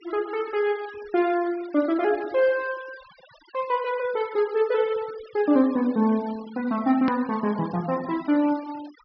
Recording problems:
treble missing; nothing above 5.5 kHz
noise reduction artefacts; signal-to-artefact ratio 21 dB
edit click; at 7 s

